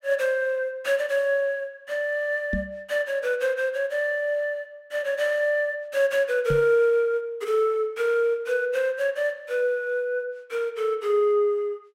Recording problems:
knock on the microphone; at 2.5 s and at 6.5 s; peak -1 dB vs average level

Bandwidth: 16 kHz